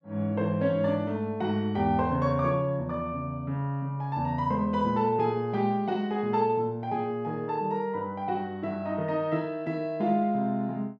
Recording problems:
none

